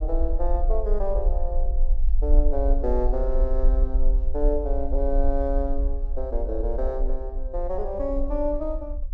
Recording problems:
low-frequency rumble; below 44 Hz, strongest tone 22 Hz, SNR -2 dB

